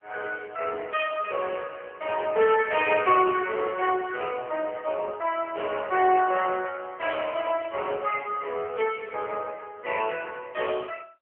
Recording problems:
telephone audio; 340 Hz to 2.9 kHz, AMR-NB

